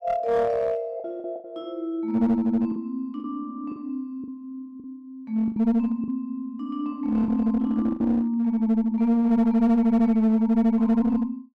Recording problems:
distortion; hard clipping, uneven, signal-to-distortion ratio 10 dB
packet loss; 5% of the sound replaced, filled with the last packet

